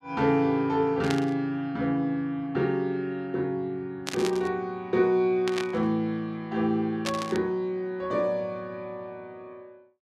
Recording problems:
burst of static; 4 times, first at 1 s; peak 0 dB vs average level

